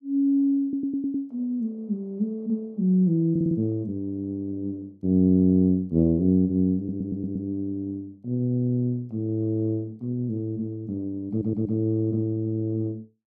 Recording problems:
audio stuttering; 4 times, first at 0.5 s

